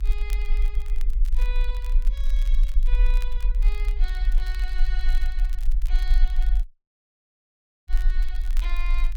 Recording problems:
rumble; below 42 Hz, SNR -15 dB
crackle; vinyl, SNR 9 dB
audio cutting out; at 6.5 s for 1 s

